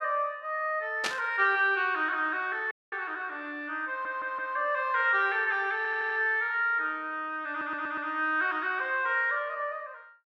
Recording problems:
burst of static; at 1 s; peak +2 dB vs average level
audio cutting out; at 2.5 s
audio stuttering; at 4 s, at 6 s and at 7.5 s

